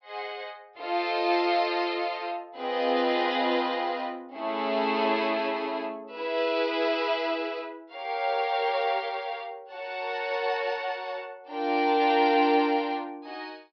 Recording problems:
treble missing; nothing above 5.5 kHz

